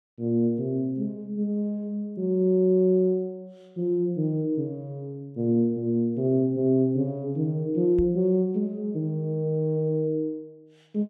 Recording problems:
knock on the microphone; at 8 s; peak -3 dB vs average level

